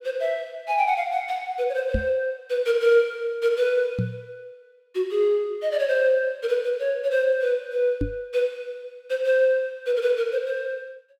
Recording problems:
microphone thump; at 2 s, at 4 s and at 8 s; peak +2 dB vs average level

